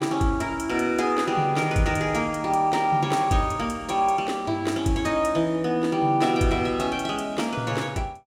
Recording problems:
none

